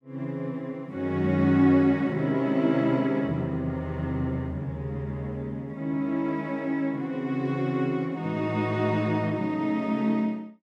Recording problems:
none

